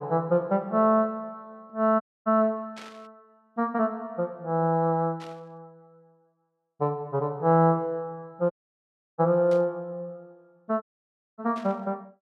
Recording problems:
audio cutting out; at 2 s, at 8.5 s for 0.5 s and at 11 s for 0.5 s
burst of static; 4 times, first at 3 s; peak -13 dB vs average level

